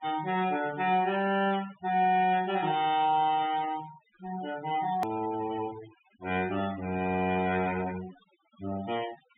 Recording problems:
low-pass filter; nothing above 3.6 kHz
denoising artefacts; signal-to-artefact ratio 16 dB
click at an edit; at 5 s

